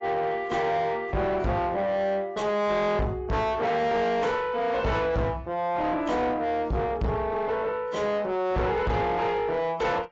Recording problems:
lossy compression; AAC, log-spectral distance 2 dB
distorted audio; soft clipping, signal-to-distortion ratio 6 dB

